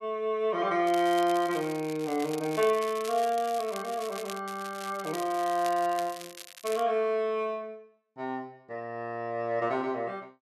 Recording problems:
crackle; from 1 to 4.5 s and from 4.5 to 7 s; loose cable, SNR 14 dB

